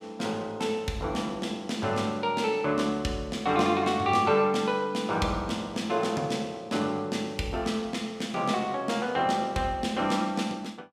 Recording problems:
none

